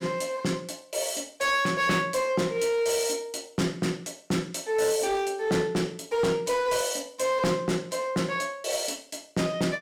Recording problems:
distortion; hard clipping, uneven, signal-to-distortion ratio 12 dB

